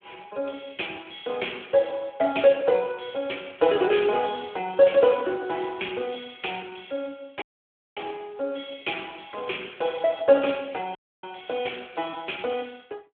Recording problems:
phone line; 240 Hz to 3.4 kHz, Speex
audio cutting out; at 7.5 s for 0.5 s and at 11 s

